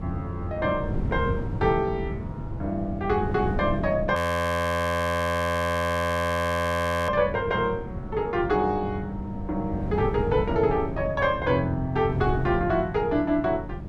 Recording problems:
wind on the microphone; below 210 Hz, SNR 7 dB
audio freezing; at 4 s for 3 s

